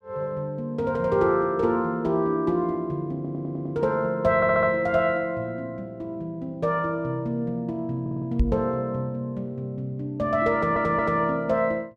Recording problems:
stutter; 4 times, first at 3 s
knock on the microphone; at 8.5 s; peak +6 dB vs average level

